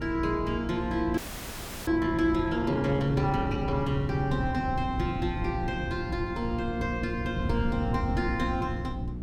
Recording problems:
hum; 60 Hz, harmonics up to 360 Hz, SNR 8 dB
wind noise; below 150 Hz, SNR 7 dB
frozen audio; at 1 s for 0.5 s

